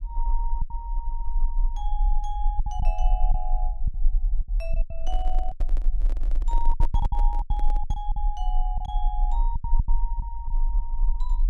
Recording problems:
rumble; below 36 Hz, strongest tone 28 Hz, SNR -9 dB
lost packets; 10% of the sound replaced, filled with silence
microphone handling noise; from 5 to 8 s; peak +2 dB vs average level

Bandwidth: 13 kHz